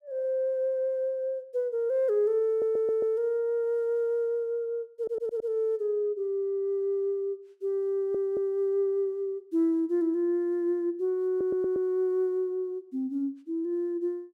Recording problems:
audio stuttering; 4 times, first at 2.5 s

